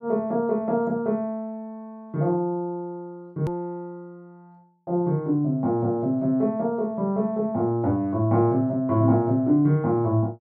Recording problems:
click at an edit; at 3.5 s

